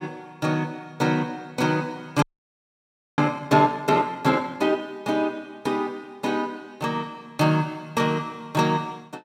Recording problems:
audio freezing; at 2 s for 1 s

